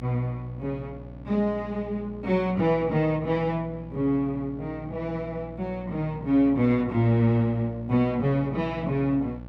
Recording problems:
hum; 60 Hz, harmonics up to 1.1 kHz, SNR 16 dB

